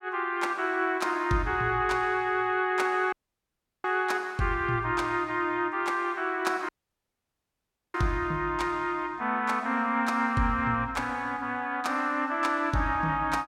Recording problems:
dropout; at 3 s for 0.5 s and at 6.5 s for 1.5 s

